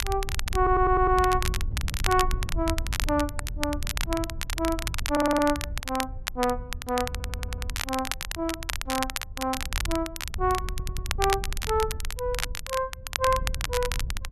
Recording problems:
wind noise; below 78 Hz, SNR 7 dB
crackle; vinyl, SNR 5 dB
audio stuttering; 4 times, first at 0.5 s

